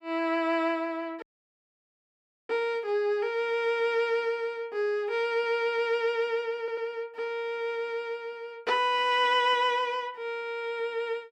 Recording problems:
dropout; at 1 s for 1.5 s
stutter; at 6.5 s

